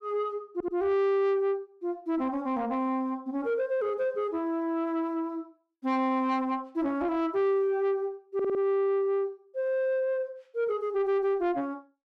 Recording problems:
distortion; soft clipping, signal-to-distortion ratio 12 dB
stutter; at 0.5 s and at 8.5 s

